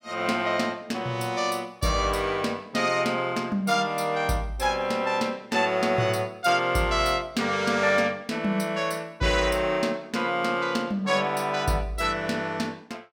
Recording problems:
none

